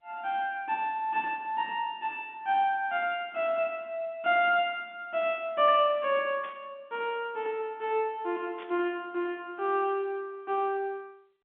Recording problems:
telephone audio; 190 Hz to 3.7 kHz, G.711
burst of static; at 6.5 s and at 8.5 s; peak -14 dB vs average level

